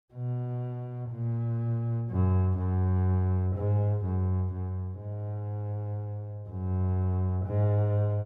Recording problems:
none

